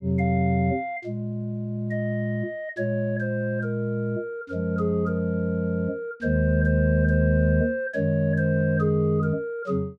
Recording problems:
none

